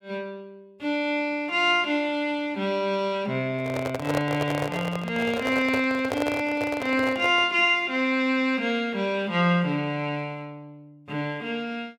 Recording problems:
microphone handling noise; from 3.5 to 7.5 s; peak +1 dB vs average level

